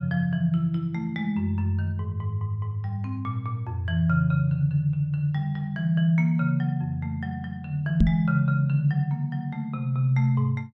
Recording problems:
microphone bump; at 8 s; peak +7 dB vs average level

